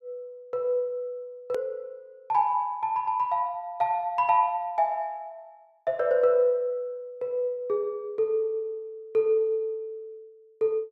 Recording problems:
hard cut with a click; at 1.5 s

